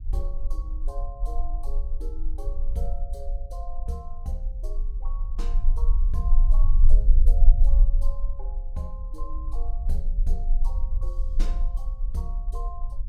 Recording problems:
low-frequency rumble; below 38 Hz, strongest tone 18 Hz, SNR -12 dB

